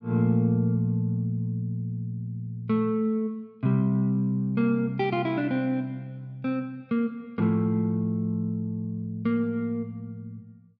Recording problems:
none

